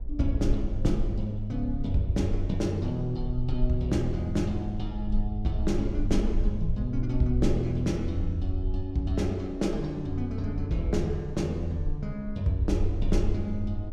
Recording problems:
rumble; below 46 Hz, SNR 7 dB
wind noise; below 360 Hz, SNR 25 dB

